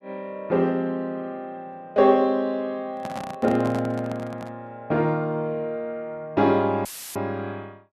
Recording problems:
handling noise; from 3 to 4.5 s; peak -6 dB vs average level
audio cutting out; at 7 s; filled with static

